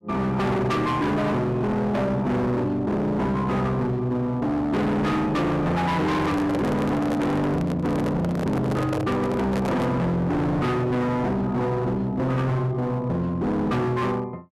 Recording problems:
distorted audio; hard clipping, signal-to-distortion ratio 6 dB
microphone handling noise; from 6 to 10 s; peak +1 dB vs average level

